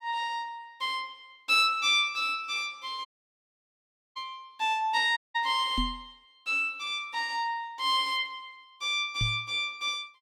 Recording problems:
audio cutting out; at 3 s for 1 s and at 5 s
microphone thump; at 6 s and at 9 s; peak 0 dB vs average level

